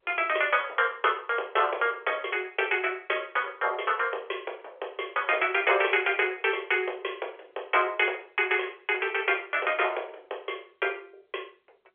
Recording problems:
phone line; 320 Hz to 3.4 kHz, G.711

